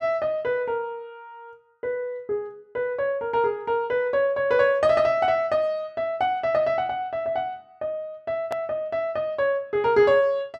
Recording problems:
click at an edit; at 8.5 s

